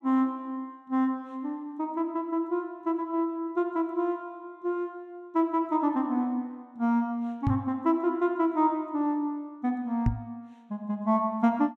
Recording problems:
microphone bump; at 7.5 s and at 10 s; peak +7 dB vs average level

